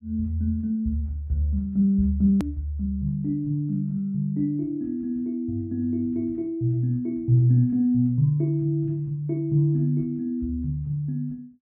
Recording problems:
edit click; at 2.5 s

